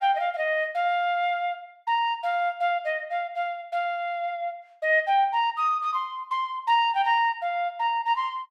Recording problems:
none

